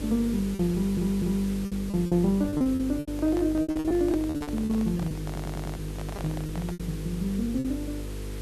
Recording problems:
hum; 50 Hz, harmonics up to 500 Hz, SNR 9 dB
background hiss; SNR 17 dB
lost packets; 14% of the sound replaced, filled with repeated pitch periods
audio stuttering; at 0.5 s and at 5.5 s
microphone handling noise; from 3 to 7 s; peak -7 dB vs average level

